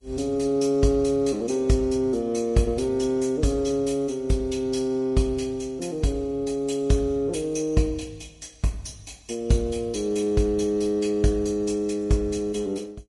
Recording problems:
lossy codec; Vorbis, log-spectral distance 3 dB

